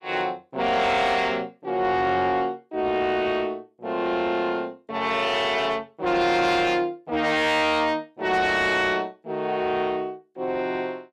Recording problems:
distortion; soft clipping, signal-to-distortion ratio 10 dB

